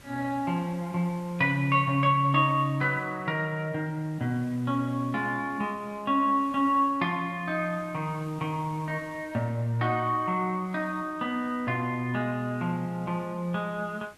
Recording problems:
hiss; slope -3 dB per octave, SNR 25 dB

